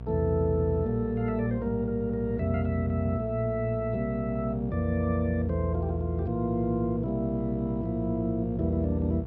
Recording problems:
hum; 60 Hz, harmonics up to 720 Hz, SNR 9 dB

